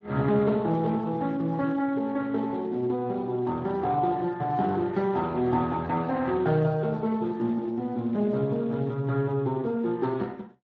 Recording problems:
lossy codec; Speex, log-spectral distance 2 dB

